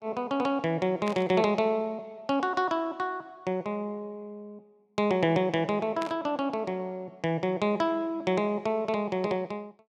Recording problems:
static burst; at 1 s and at 6 s; peak -6 dB vs average level

